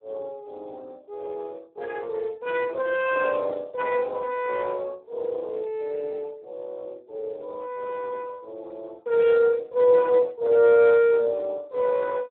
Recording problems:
telephone audio; 300 Hz to 3.4 kHz, Speex

